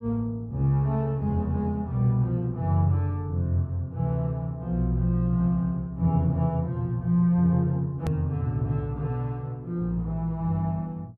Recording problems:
edit click; at 8 s

